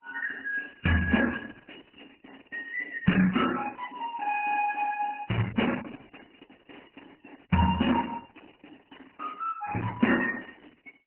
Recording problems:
codec artefacts; MP3, then Opus, log-spectral distance 11 dB, nothing above 2.9 kHz

